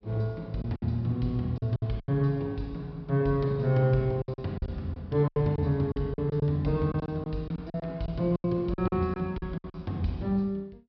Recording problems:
treble missing; nothing above 5.5 kHz
lost packets; 11% of the sound replaced, filled with silence

